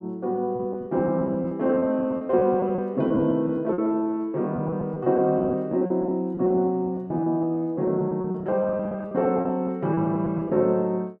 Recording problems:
packet loss; 14% of the sound replaced, filled with repeated pitch periods

